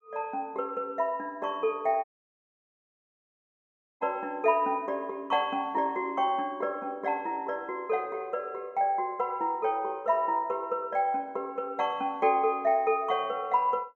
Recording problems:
dropout; at 2 s for 2 s

